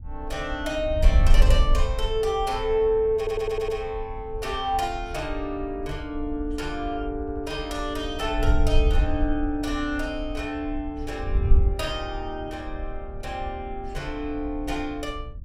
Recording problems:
wind on the microphone; below 60 Hz, SNR 2 dB
audio stuttering; at 3 s and at 7 s

